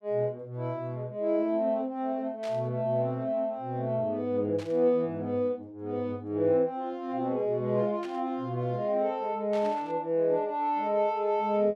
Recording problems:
static burst; 4 times, first at 2.5 s; peak -12 dB vs average level

